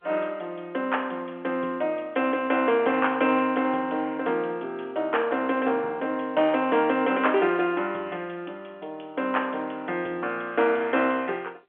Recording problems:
phone line; 280 Hz to 3.5 kHz, G.711

